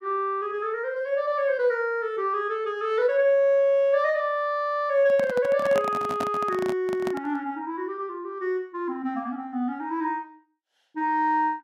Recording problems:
handling noise; from 5 to 7.5 s; peak -2 dB vs average level

